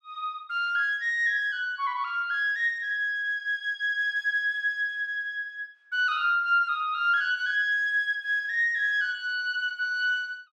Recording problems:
none

